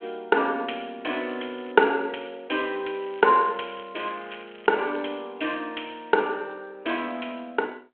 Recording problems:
telephone audio; 220 Hz to 3.3 kHz, G.726
crackle; at 1.5 s and from 3 to 5 s; loose cable, SNR 24 dB

